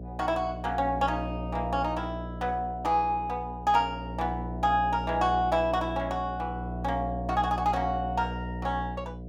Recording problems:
hum; 60 Hz, harmonics up to 720 Hz, SNR 8 dB

